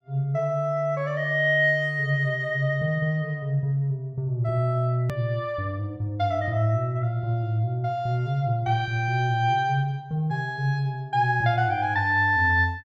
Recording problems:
hard cut with a click; at 5 s

